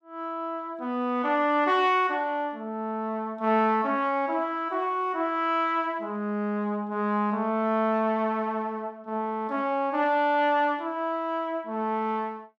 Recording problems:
none

